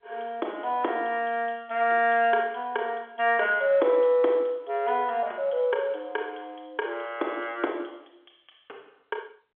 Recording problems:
telephone audio; 280 Hz to 3.5 kHz, G.711

